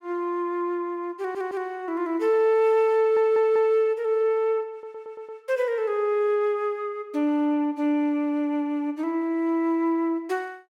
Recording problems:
audio stuttering; at 1 s, at 3 s and at 4.5 s

